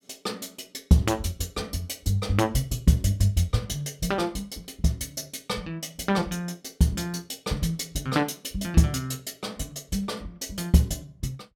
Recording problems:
none

